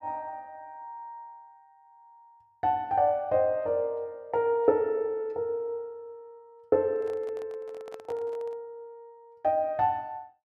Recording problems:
handling noise; from 7 to 8.5 s; peak -11 dB vs average level

